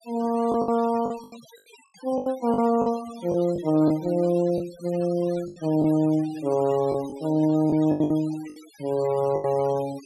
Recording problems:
denoising artefacts; signal-to-artefact ratio 21 dB
packet loss; 9% of the sound replaced, filled with the last packet

